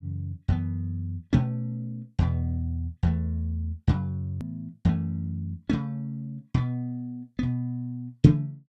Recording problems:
click at an edit; at 4.5 s

